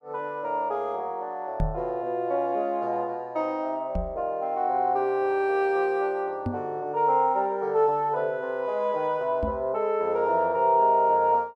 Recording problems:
microphone bump; 4 times, first at 1.5 s; peak +1 dB vs average level

